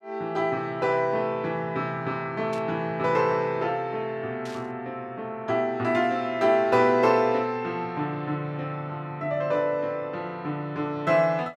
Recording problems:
static burst; at 2.5 s and at 4.5 s; peak -13 dB vs average level

